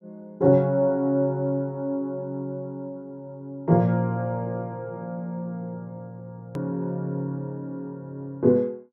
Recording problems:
click at an edit; at 6.5 s

